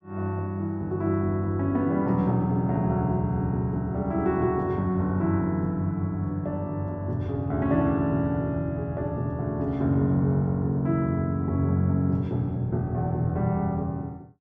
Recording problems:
none

